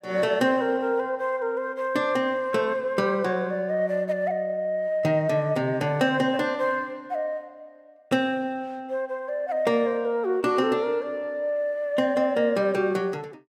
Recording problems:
none

